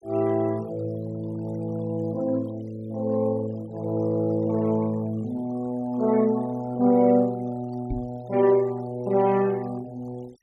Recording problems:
noise reduction artefacts; signal-to-artefact ratio 25 dB
microphone thump; at 8 s; peak -3 dB vs average level

